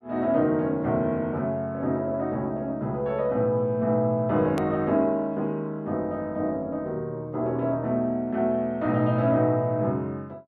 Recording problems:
hard cut with a click; at 4.5 s

